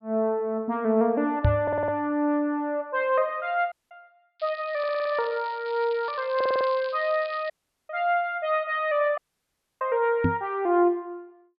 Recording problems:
treble cut off; nothing above 4.9 kHz
microphone bump; at 1.5 s and at 10 s; peak +7 dB vs average level
audio stuttering; at 1.5 s, at 5 s and at 6.5 s
audio cutting out; at 3.5 s, at 7.5 s and at 9 s for 0.5 s
crackle; from 4.5 to 7.5 s; loose cable, SNR 20 dB

